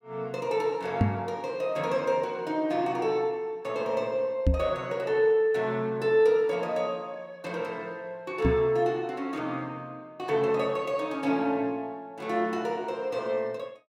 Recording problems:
microphone bump; at 1 s, at 4.5 s and at 8.5 s; peak +8 dB vs average level

